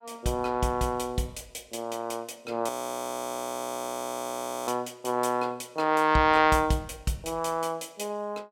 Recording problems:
frozen audio; at 2.5 s for 2 s

